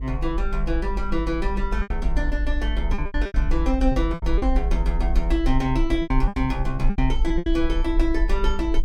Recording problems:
electrical hum; 50 Hz, harmonics up to 500 Hz, SNR 14 dB
low-frequency rumble; below 50 Hz, SNR 0 dB
lost packets; 9% of the sound replaced, filled with repeated pitch periods

